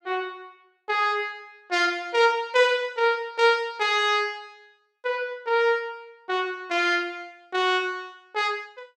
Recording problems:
none

